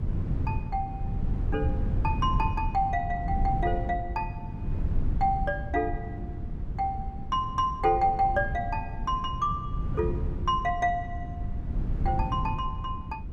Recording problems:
wind on the microphone; below 130 Hz, SNR 3 dB

